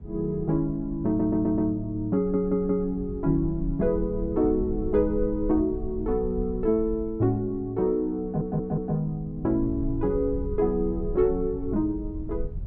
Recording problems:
rumble; below 78 Hz, SNR 12 dB
audio stuttering; at 1 s, at 2 s and at 8 s

